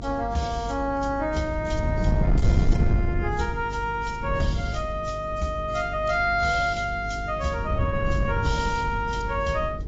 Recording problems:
lossy compression; AAC, log-spectral distance 2 dB, nothing above 7.3 kHz
distorted audio; soft clipping, signal-to-distortion ratio 12 dB
hum; 50 Hz, harmonics up to 450 Hz, SNR 10 dB
wind on the microphone; below 130 Hz, SNR 1 dB

